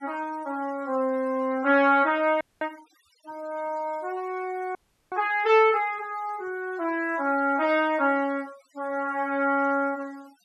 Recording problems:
noise reduction artefacts; signal-to-artefact ratio 26 dB
frozen audio; at 2.5 s and at 5 s

